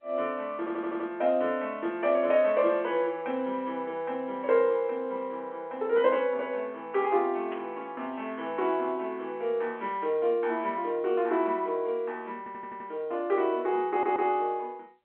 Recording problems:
telephone audio; 240 Hz to 3.4 kHz, G.711
stutter; at 0.5 s, at 12 s and at 14 s
static burst; at 7.5 s; peak -11 dB vs average level

